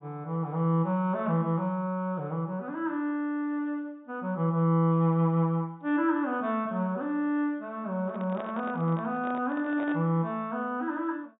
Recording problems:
treble cut off; nothing above 4 kHz
handling noise; from 8 to 10 s; peak -8 dB vs average level

